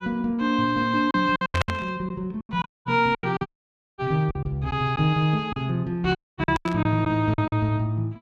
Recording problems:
lost packets; 12% of the sound replaced, filled with silence
burst of static; at 1.5 s and at 6.5 s; peak +2 dB vs average level
dropout; at 2.5 s, at 3.5 s for 0.5 s and at 6 s

